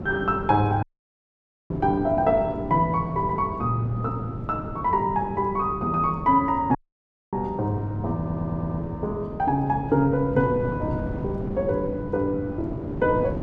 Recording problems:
wind on the microphone; below 330 Hz, SNR 9 dB
audio cutting out; at 1 s for 1 s and at 7 s for 0.5 s
stutter; at 8 s

